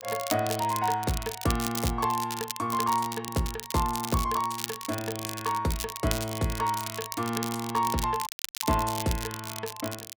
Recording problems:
crackling; vinyl, SNR 6 dB
audio cutting out; at 8.5 s

